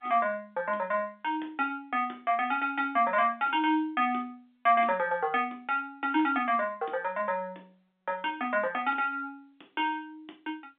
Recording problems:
phone line; 280 Hz to 3.9 kHz, G.711

